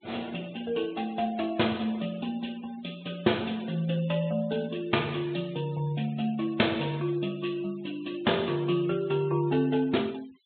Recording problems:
treble cut off; nothing above 4 kHz
denoising artefacts; signal-to-artefact ratio 22 dB

